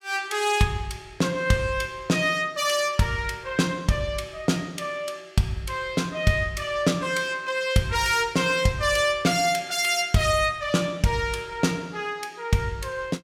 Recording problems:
none

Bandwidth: 17 kHz